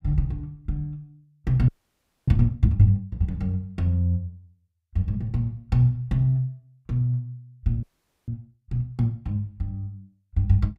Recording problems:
frozen audio; at 1.5 s for 0.5 s and at 8 s

